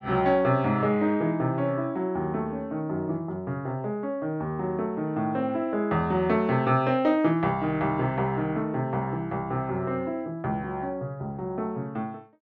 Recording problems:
none

